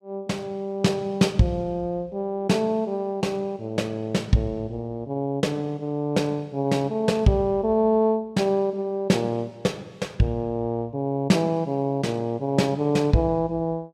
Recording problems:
none

